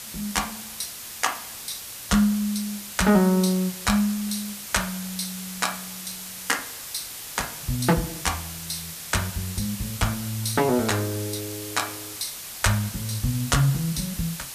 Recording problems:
background hiss; slope +1 dB per octave, SNR 8 dB

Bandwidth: 14.5 kHz